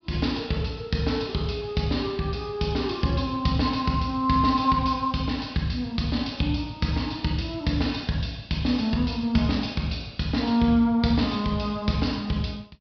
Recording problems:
treble cut off; nothing above 5.5 kHz

